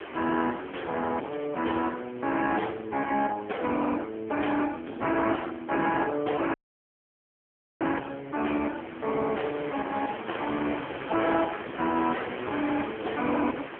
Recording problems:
phone line; 260 Hz to 3.2 kHz, AMR-NB
distorted audio; soft clipping, signal-to-distortion ratio 10 dB
wind on the microphone; below 2.1 kHz, SNR 12 dB
dropout; at 6.5 s for 1.5 s

